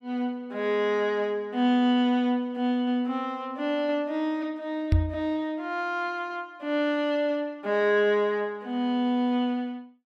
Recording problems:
microphone thump; at 5 s; peak +7 dB vs average level

